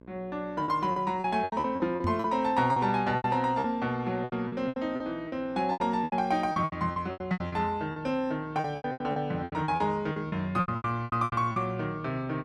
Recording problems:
hum; 60 Hz, harmonics up to 1.6 kHz, SNR 23 dB
lost packets; 18% of the sound replaced, filled with repeated pitch periods
microphone thump; at 2 s; peak +1 dB vs average level

